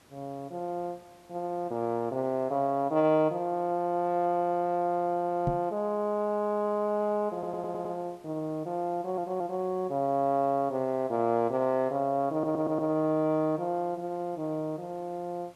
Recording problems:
hiss; slope -4 dB per octave, SNR 29 dB
microphone bump; at 5.5 s; peak +2 dB vs average level
stutter; at 7.5 s, at 9 s and at 12 s

